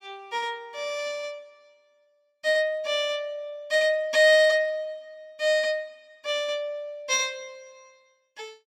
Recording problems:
none

